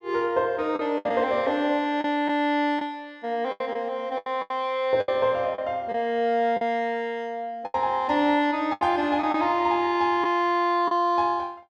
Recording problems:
packet loss; 7% of the sound replaced, filled with the last packet

